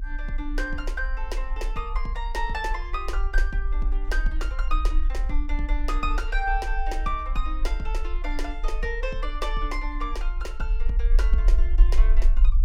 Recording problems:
rumble; below 42 Hz, strongest tone 32 Hz, SNR -4 dB

